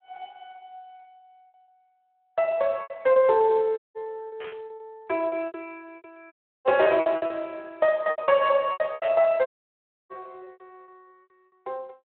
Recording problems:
telephone audio; 340 Hz to 3.4 kHz, Speex
lost packets; 15% of the sound replaced, filled with repeated pitch periods
audio cutting out; at 4 s, at 6.5 s and at 9.5 s for 0.5 s
static burst; at 4.5 s, at 7 s and at 9 s; peak -11 dB vs average level

